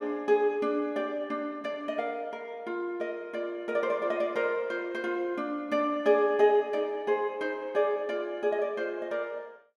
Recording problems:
none

